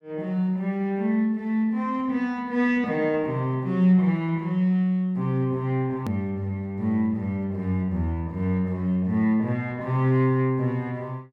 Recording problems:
edit click; at 6 s

